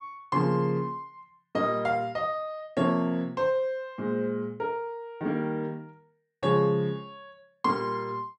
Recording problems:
none

